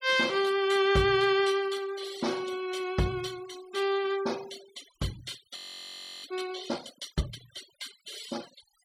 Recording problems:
noise reduction artefacts; signal-to-artefact ratio 17 dB
frozen audio; at 5.5 s for 0.5 s

